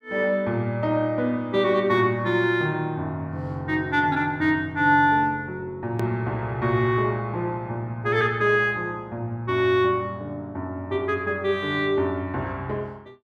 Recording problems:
hard cut with a click; at 6 s

